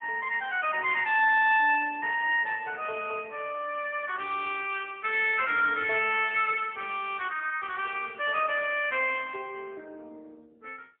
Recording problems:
phone line; 320 Hz to 3.5 kHz, AMR-NB, then MP3

